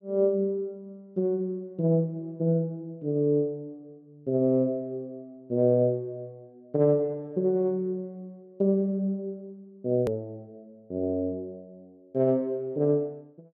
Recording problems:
click at an edit; at 10 s

